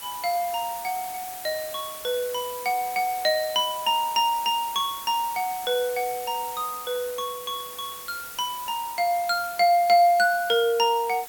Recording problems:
hiss; slope -1 dB per octave, SNR 12 dB

